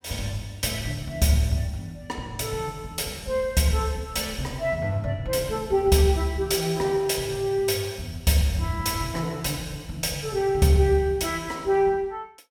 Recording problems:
none

